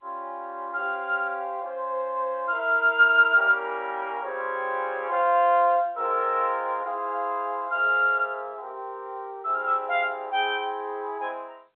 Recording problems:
telephone audio; 300 Hz to 3.9 kHz, G.711

